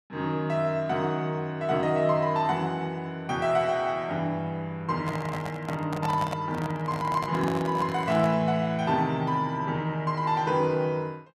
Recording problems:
handling noise; from 5 to 8.5 s; peak -2 dB vs average level

